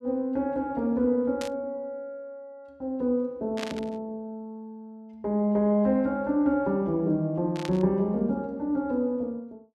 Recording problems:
static burst; at 1.5 s, at 3.5 s and at 7.5 s; peak -3 dB vs average level

